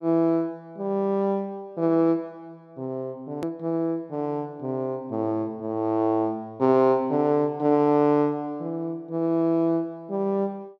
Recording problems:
hard cut with a click; at 3.5 s

